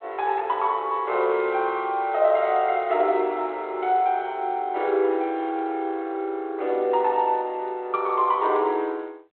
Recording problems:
telephone audio; 320 Hz to 3.6 kHz, G.726

